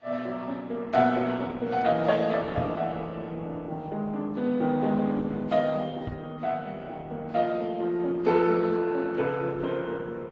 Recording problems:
lossy compression; Opus, then AAC, log-spectral distance 3 dB, nothing above 7.3 kHz
knock on the microphone; at 2.5 s and at 6 s; peak 0 dB vs average level

